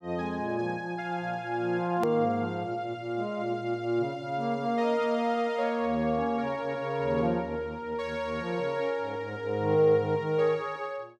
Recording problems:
click at an edit; at 2 s

